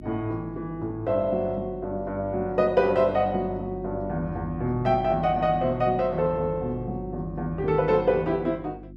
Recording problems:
hum; 50 Hz, harmonics up to 350 Hz, SNR 14 dB

